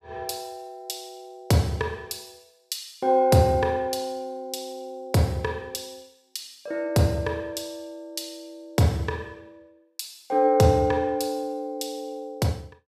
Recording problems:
none

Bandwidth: 15 kHz